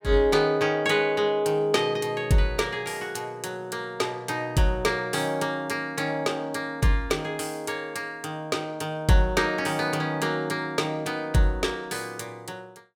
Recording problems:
none

